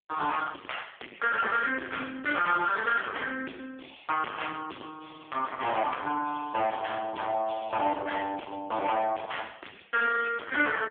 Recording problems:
telephone audio; 240 Hz to 3.4 kHz, AMR-NB
distorted audio; soft clipping, signal-to-distortion ratio 7 dB

